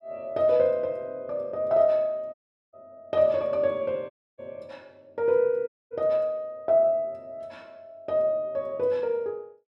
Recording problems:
audio cutting out; at 2.5 s, at 4 s and at 5.5 s

